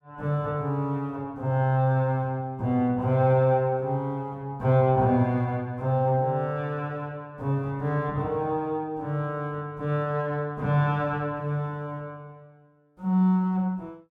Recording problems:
none

